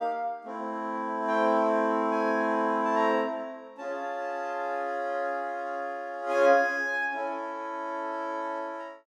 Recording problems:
none

